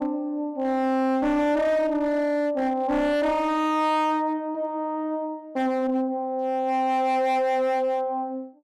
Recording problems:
distortion; hard clipping, signal-to-distortion ratio 10 dB

